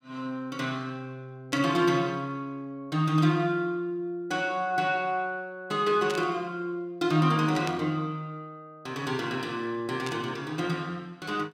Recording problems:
burst of static; 4 times, first at 1.5 s; peak -3 dB vs average level

